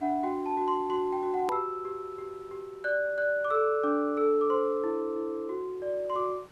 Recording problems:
background hiss; slope -5 dB per octave, SNR 28 dB
hard cut with a click; at 1.5 s

